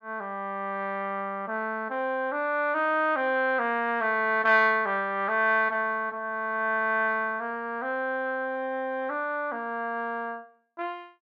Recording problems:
none

